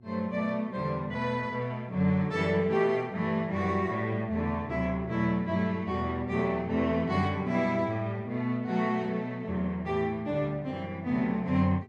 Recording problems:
mains hum; 60 Hz, harmonics up to 720 Hz, SNR 23 dB

